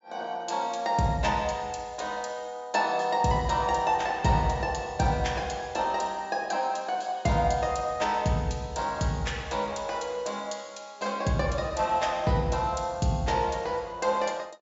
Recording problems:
low-pass filter; nothing above 8 kHz

